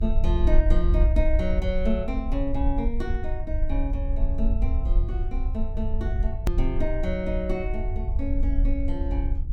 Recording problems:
hum; 50 Hz, harmonics up to 350 Hz, SNR 15 dB
low-frequency rumble; below 56 Hz, SNR -4 dB
hard cut with a click; at 6.5 s

